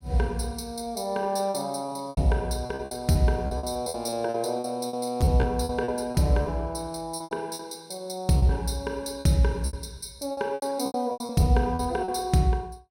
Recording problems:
packet loss; 14% of the sound replaced, filled with repeated pitch periods

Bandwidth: 16 kHz